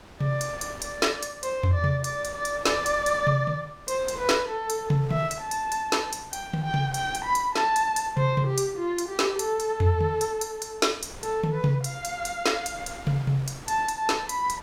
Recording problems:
wind on the microphone; below 1.5 kHz, SNR 20 dB

